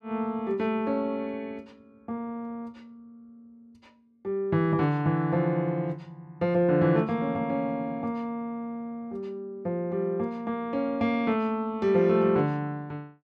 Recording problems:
none

